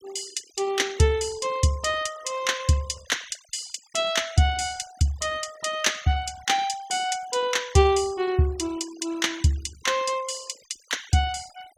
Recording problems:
denoising artefacts; signal-to-artefact ratio 21 dB

